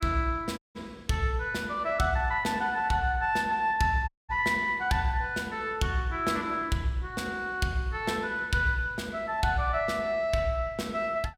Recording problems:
dropout; at 0.5 s and at 4 s

